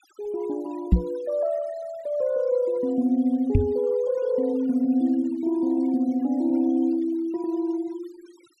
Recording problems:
denoising artefacts; signal-to-artefact ratio 25 dB
knock on the microphone; at 1 s and at 3.5 s; peak +10 dB vs average level

